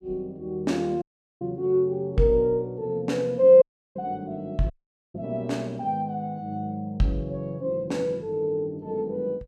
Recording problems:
dropout; at 1 s, at 3.5 s and at 4.5 s

